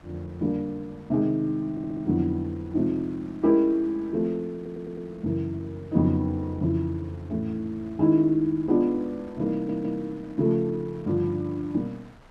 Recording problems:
wind on the microphone; below 1.3 kHz, SNR 26 dB
audio stuttering; at 1.5 s, at 4.5 s and at 9.5 s

